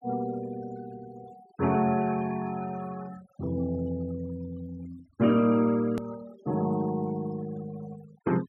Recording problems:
denoising artefacts; signal-to-artefact ratio 20 dB
hard cut with a click; at 6 s

